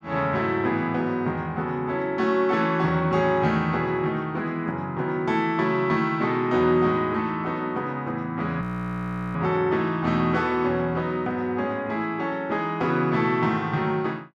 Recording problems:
audio freezing; at 8.5 s for 0.5 s

